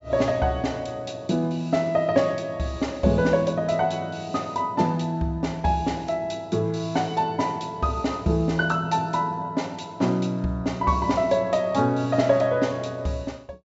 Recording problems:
treble cut off; nothing above 8 kHz

